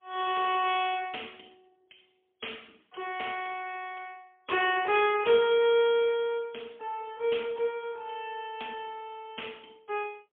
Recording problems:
phone line; 300 Hz to 3.4 kHz, AMR-NB, then MP3

